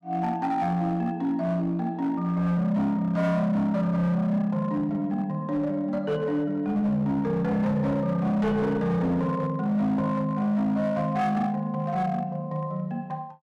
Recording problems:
distortion; hard clipping, signal-to-distortion ratio 11 dB

